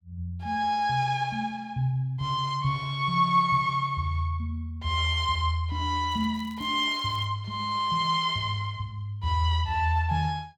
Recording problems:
crackling; from 6 to 7.5 s; loose cable, SNR 28 dB

